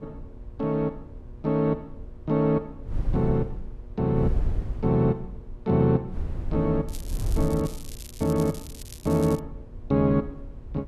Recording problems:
hum; 60 Hz, harmonics up to 1.2 kHz, SNR 27 dB
wind noise; below 82 Hz, SNR 11 dB
crackle; from 7 to 9.5 s; loose cable, SNR 18 dB

